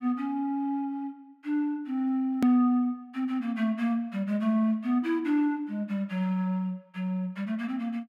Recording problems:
hard cut with a click; at 2.5 s

